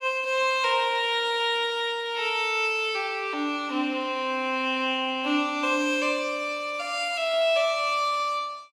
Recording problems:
none

